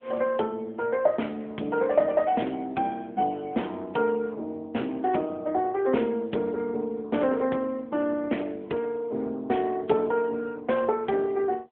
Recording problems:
telephone audio; 240 Hz to 3.4 kHz, AMR-NB

